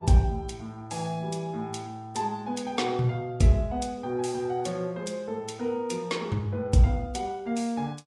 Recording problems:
lossy codec; Vorbis, log-spectral distance 2 dB, nothing above 10.7 kHz

